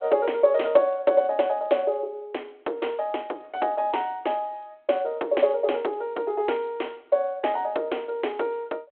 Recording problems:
telephone audio; 280 Hz to 3.4 kHz, G.726

